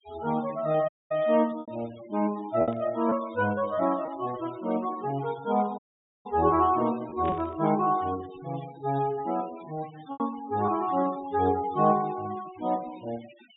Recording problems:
low-pass filter; nothing above 4 kHz
noise reduction artefacts; signal-to-artefact ratio 20 dB
packet loss; 3% of the sound replaced, filled with repeated pitch periods
dropout; at 1 s and at 6 s
static burst; at 2.5 s and at 7 s; peak -12 dB vs average level

